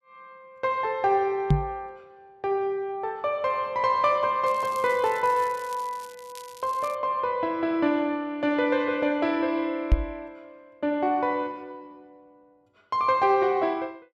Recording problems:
knock on the microphone; at 1.5 s and at 10 s; peak +8 dB vs average level
crackle; from 4.5 to 7 s; loose cable, SNR 22 dB

